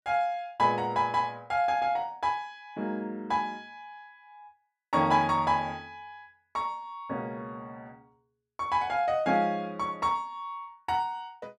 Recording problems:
none

